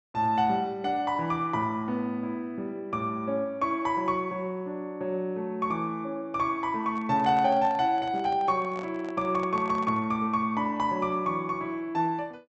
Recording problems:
low-pass filter; nothing above 7.9 kHz
handling noise; from 7 to 10 s; peak -9 dB vs average level

